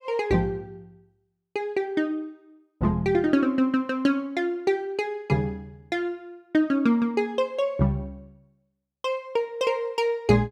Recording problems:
none

